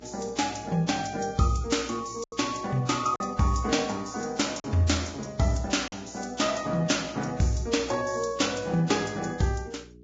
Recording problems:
codec artefacts; Vorbis, log-spectral distance 6 dB, nothing above 7.3 kHz
hum; 60 Hz, harmonics up to 420 Hz, SNR 23 dB
lost packets; 2% of the sound replaced, filled with silence

